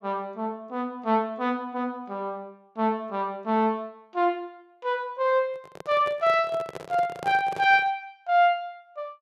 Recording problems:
handling noise; from 5.5 to 8 s; peak -7 dB vs average level

